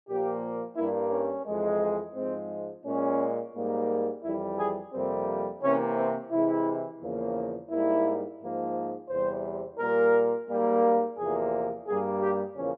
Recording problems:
none

